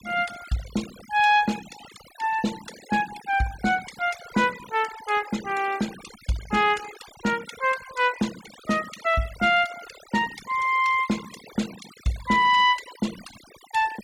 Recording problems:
noise reduction artefacts; signal-to-artefact ratio 17 dB

